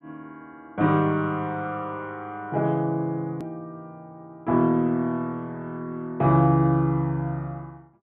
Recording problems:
treble cut off; nothing above 4 kHz
edit click; at 3.5 s

